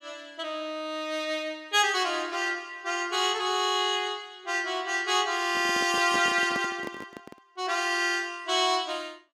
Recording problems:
handling noise; from 5.5 to 7.5 s; peak -4 dB vs average level

